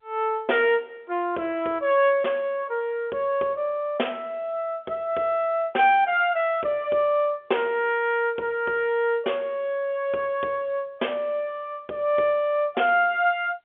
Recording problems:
telephone audio; 280 Hz to 3.5 kHz, G.711

